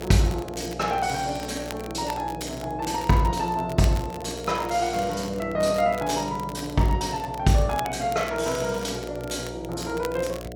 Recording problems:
hum; 60 Hz, harmonics up to 720 Hz, SNR 12 dB
crackle; vinyl, SNR 17 dB

